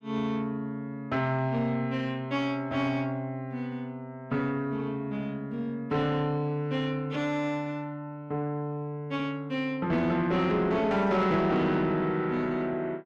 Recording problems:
distortion; soft clipping, signal-to-distortion ratio 11 dB

